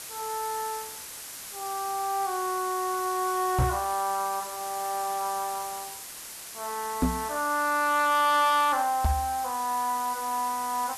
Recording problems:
distortion; hard clipping, signal-to-distortion ratio 11 dB
hiss; slope +1 dB per octave, SNR 10 dB
knock on the microphone; at 3.5 s, at 7 s and at 9 s; peak +6 dB vs average level

